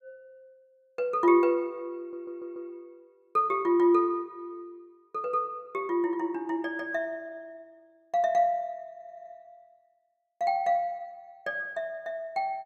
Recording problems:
audio stuttering; at 2 s and at 9 s

